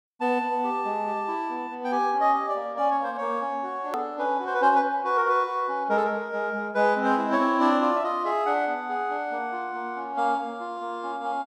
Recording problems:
hard cut with a click; at 4 s

